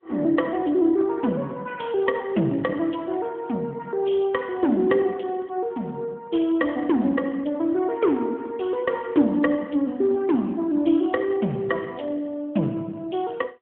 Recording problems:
telephone audio; 150 Hz to 3.4 kHz, AMR-NB

